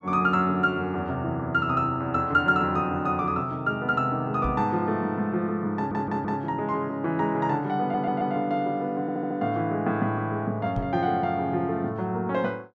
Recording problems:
knock on the microphone; at 4.5 s and at 11 s; peak -2 dB vs average level
stutter; at 6 s, at 8 s and at 9 s

